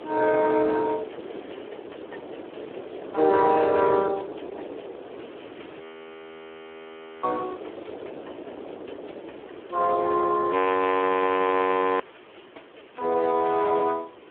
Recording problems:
telephone audio; 300 Hz to 3.3 kHz, Speex
background hiss; SNR 27 dB
wind on the microphone; below 570 Hz, SNR 16 dB
audio freezing; at 6 s for 1.5 s and at 11 s for 1.5 s

